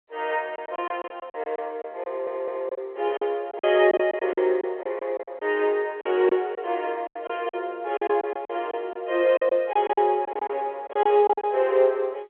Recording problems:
phone line; 320 Hz to 3.3 kHz, G.711
lost packets; 12% of the sound replaced, filled with silence
audio stuttering; at 2 s

